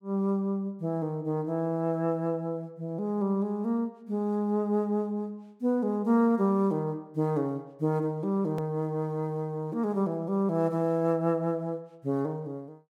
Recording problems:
click at an edit; at 8.5 s

